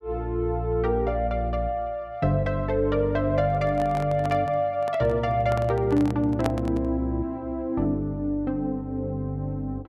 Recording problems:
microphone handling noise; from 3.5 to 7 s; peak 0 dB vs average level

